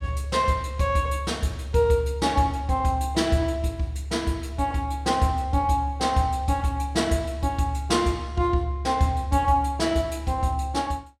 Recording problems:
none

